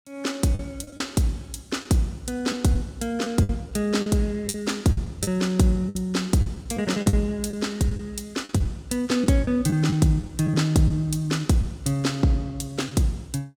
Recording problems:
packet loss; 7% of the sound replaced, filled with the last packet

